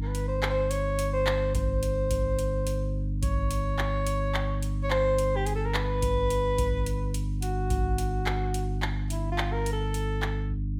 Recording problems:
hum; 50 Hz, harmonics up to 300 Hz, SNR 1 dB

